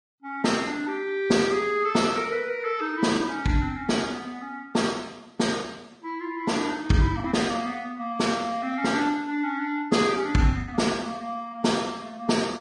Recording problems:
lossy compression; Vorbis, log-spectral distance 3 dB
packet loss; 1.7% of the sound replaced, filled with the last packet

